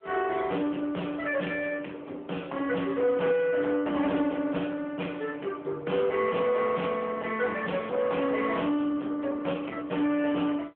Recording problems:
telephone audio; 240 Hz to 3.3 kHz, AMR-NB
distortion; soft clipping, signal-to-distortion ratio 12 dB

